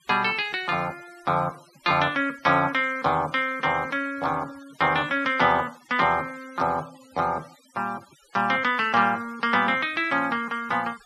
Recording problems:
noise reduction artefacts; signal-to-artefact ratio 23 dB

